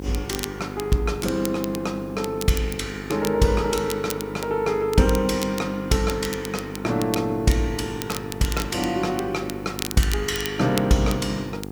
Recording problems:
hum; 50 Hz, harmonics up to 1.4 kHz, SNR 11 dB
background hiss; SNR 29 dB
crackle; vinyl, SNR 12 dB

